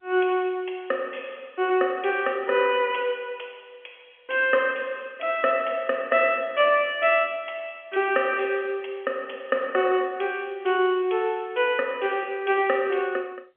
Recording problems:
phone line; 220 Hz to 3.2 kHz, G.711

